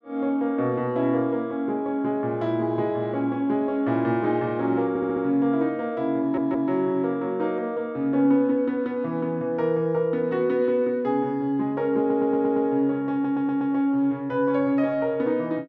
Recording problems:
stutter; 4 times, first at 5 s

